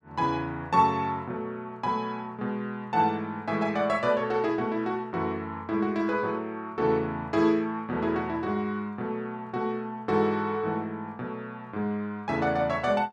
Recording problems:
none

